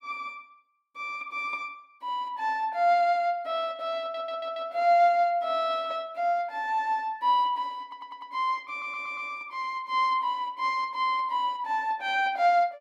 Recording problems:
audio stuttering; at 4 s, at 8 s and at 8.5 s

